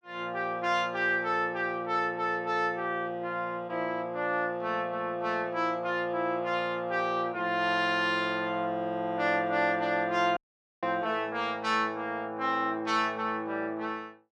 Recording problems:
audio cutting out; at 10 s

